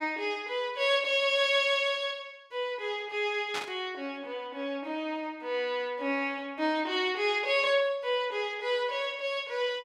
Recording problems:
static burst; at 3.5 s; peak -2 dB vs average level

